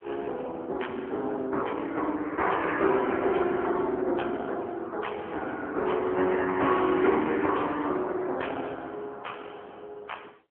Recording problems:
telephone audio; 260 Hz to 3.3 kHz, AMR-NB

